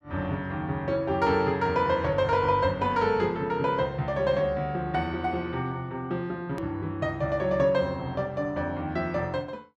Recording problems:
click at an edit; at 6.5 s

